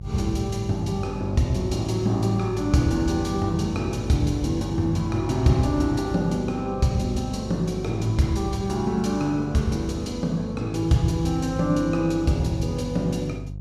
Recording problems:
hum; 50 Hz, harmonics up to 350 Hz, SNR 11 dB

